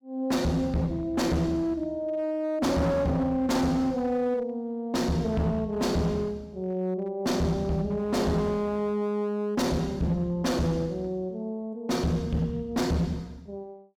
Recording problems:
distortion; hard clipping, uneven, signal-to-distortion ratio 7 dB

